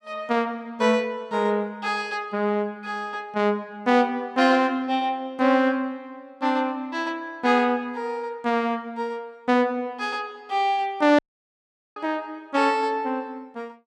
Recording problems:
dropout; at 11 s for 1 s

